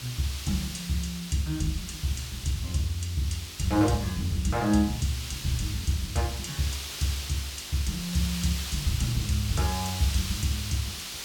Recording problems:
hum; 50 Hz, harmonics up to 400 Hz, SNR 24 dB
hiss; slope +2 dB per octave, SNR 7 dB

